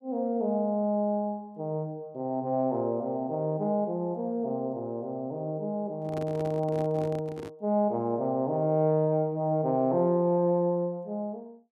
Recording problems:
microphone handling noise; from 6 to 7.5 s; peak -7 dB vs average level

